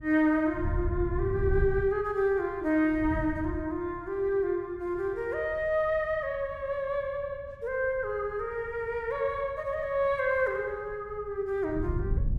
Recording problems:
wind noise; below 110 Hz, SNR 6 dB

